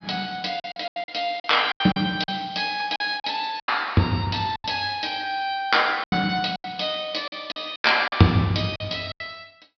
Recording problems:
treble missing; nothing above 5.5 kHz
packet loss; 12% of the sound replaced, filled with silence

